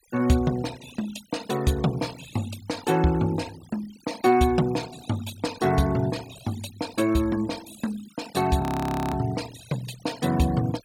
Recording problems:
noise reduction artefacts; signal-to-artefact ratio 17 dB
frozen audio; at 8.5 s for 0.5 s

